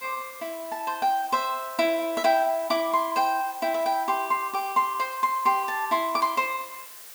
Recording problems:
hiss; slope 0 dB per octave, SNR 16 dB

